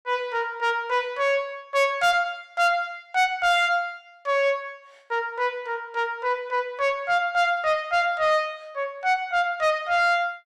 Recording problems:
distortion; soft clipping, signal-to-distortion ratio 10 dB

